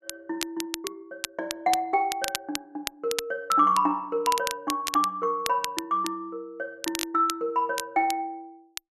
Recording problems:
crackle; vinyl, SNR 8 dB

